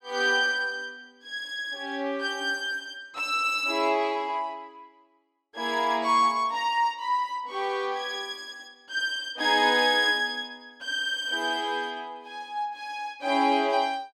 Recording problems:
none

